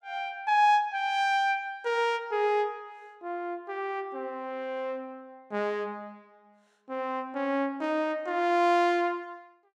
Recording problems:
none

